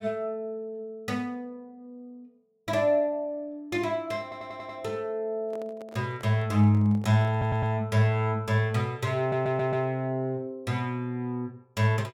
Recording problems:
audio stuttering; at 4 s, at 7.5 s and at 9 s
handling noise; from 5.5 to 8 s; peak -13 dB vs average level

